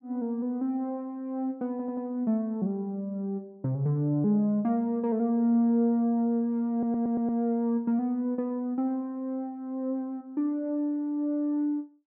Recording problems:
audio stuttering; at 1.5 s and at 6.5 s

